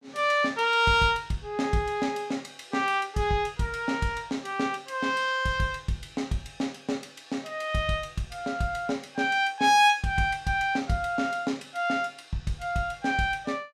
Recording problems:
none

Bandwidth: 15 kHz